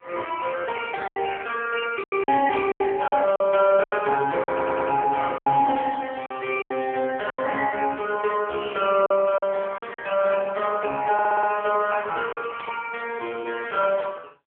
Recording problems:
phone line; 220 Hz to 3.4 kHz, AMR-NB
lost packets; 7% of the sound replaced, filled with silence
burst of static; at 2.5 s, at 10 s and at 13 s; peak -12 dB vs average level
audio stuttering; at 4.5 s and at 11 s

